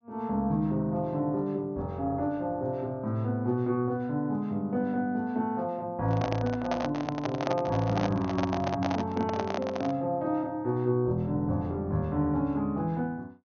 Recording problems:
treble cut off; nothing above 6.4 kHz
microphone handling noise; from 6 to 10 s; peak +2 dB vs average level

